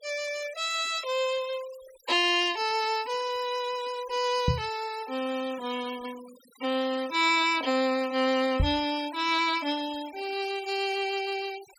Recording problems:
noise reduction artefacts; signal-to-artefact ratio 18 dB
microphone thump; at 4.5 s and at 8.5 s; peak +5 dB vs average level

